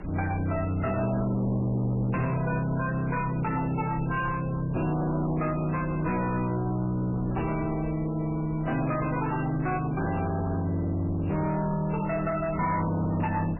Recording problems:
lossy codec; MP3, log-spectral distance 3 dB, nothing above 2.7 kHz
distortion; soft clipping, signal-to-distortion ratio 10 dB
wind on the microphone; below 290 Hz, SNR 13 dB

